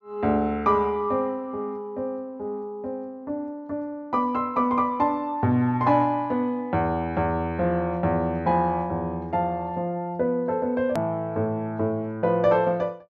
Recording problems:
low-pass filter; nothing above 7.4 kHz
edit click; at 11 s

